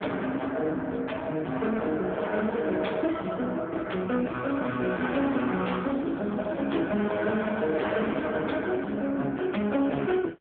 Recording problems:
phone line; 130 Hz to 3.6 kHz, AMR-NB
distorted audio; hard clipping, signal-to-distortion ratio 9 dB
crackling; from 4.5 to 8.5 s; loose cable, SNR 27 dB

